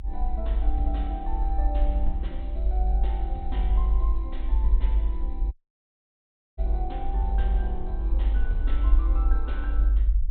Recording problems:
low-pass filter; nothing above 4 kHz
low-frequency rumble; below 52 Hz, strongest tone 50 Hz, SNR -11 dB
dropout; at 5.5 s for 1 s

